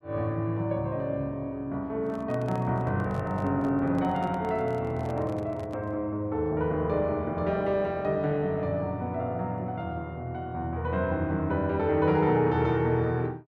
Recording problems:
microphone handling noise; from 2 to 6 s; peak -10 dB vs average level

